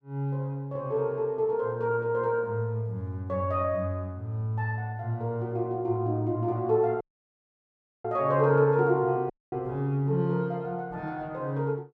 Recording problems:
dropout; at 7 s for 1 s and at 9.5 s

